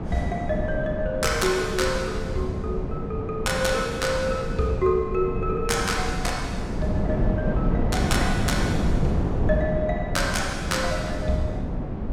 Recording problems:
wind on the microphone; below 260 Hz, SNR 1 dB

